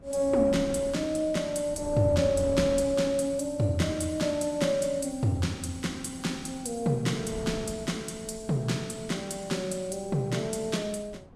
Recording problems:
lossy compression; Vorbis, log-spectral distance 3 dB, nothing above 11.3 kHz
wind noise; below 340 Hz, SNR 16 dB

